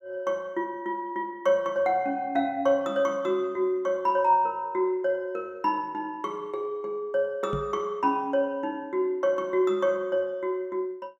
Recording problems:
microphone thump; at 7.5 s; peak -3 dB vs average level

